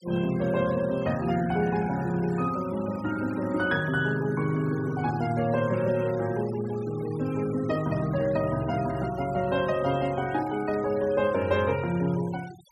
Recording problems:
noise reduction artefacts; signal-to-artefact ratio 19 dB

